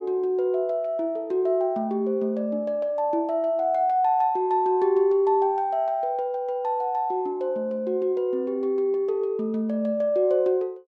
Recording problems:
none

